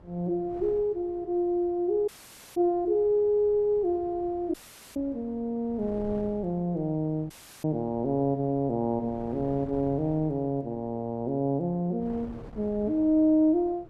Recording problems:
wind on the microphone; below 420 Hz, SNR 20 dB
dropout; at 2 s, at 4.5 s and at 7.5 s

